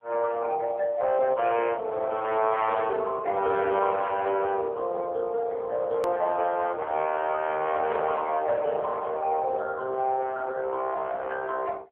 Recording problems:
phone line; 320 Hz to 3.3 kHz, AMR-NB
edit click; at 6 s

